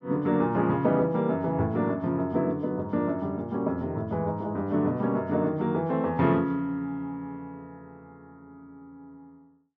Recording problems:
none

